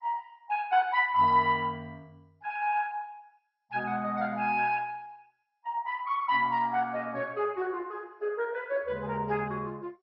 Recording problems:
lossy compression; MP2, log-spectral distance 3 dB

